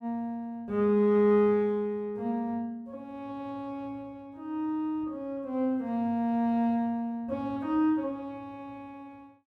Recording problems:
none

